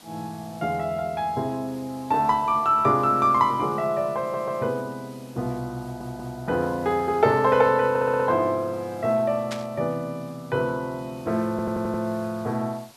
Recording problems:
background hiss; slope -1 dB per octave, SNR 26 dB
audio stuttering; 4 times, first at 4 s
static burst; at 9.5 s; peak -5 dB vs average level

